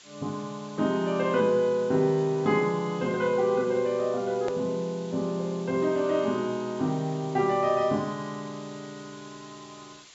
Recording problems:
treble cut off; nothing above 8 kHz
background hiss; slope +2 dB per octave, SNR 22 dB
click at an edit; at 4.5 s

